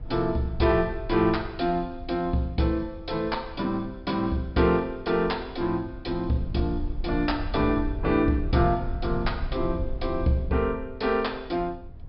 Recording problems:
low-pass filter; nothing above 5.2 kHz
rumble; below 78 Hz, SNR 11 dB

